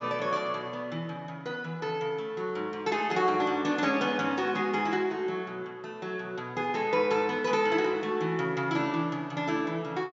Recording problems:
treble cut off; nothing above 7.3 kHz

